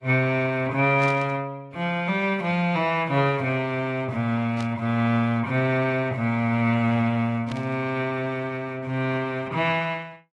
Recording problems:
lossy compression; AAC, log-spectral distance 2 dB
burst of static; at 1 s, at 4.5 s and at 7.5 s; peak -10 dB vs average level

